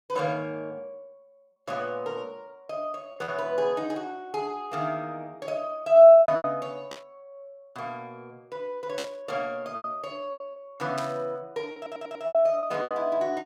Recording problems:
lost packets; 6% of the sound replaced, filled with repeated pitch periods
burst of static; at 7 s, at 9 s and at 11 s; peak -6 dB vs average level
stutter; at 12 s

